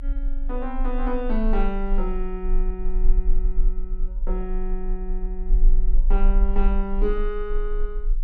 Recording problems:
low-frequency rumble; below 32 Hz, strongest tone 24 Hz, SNR -4 dB

